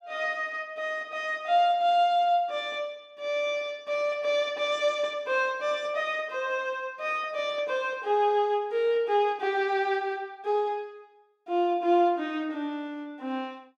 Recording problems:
none

